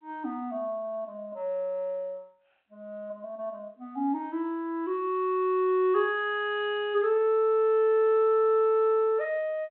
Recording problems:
phone line; 240 Hz to 3.3 kHz, G.726

